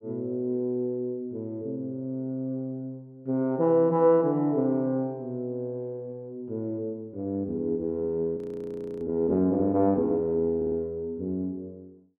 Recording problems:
frozen audio; at 8.5 s for 0.5 s
stutter; at 11 s

